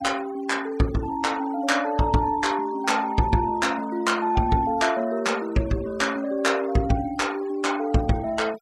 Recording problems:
noise reduction artefacts; signal-to-artefact ratio 21 dB

